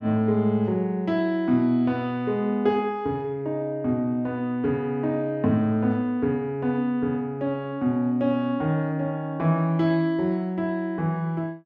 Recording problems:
none

